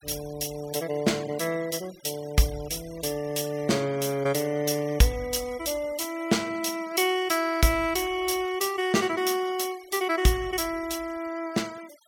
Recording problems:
noise reduction artefacts; signal-to-artefact ratio 20 dB

